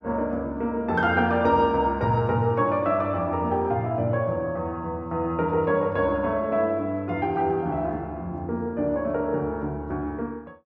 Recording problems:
none

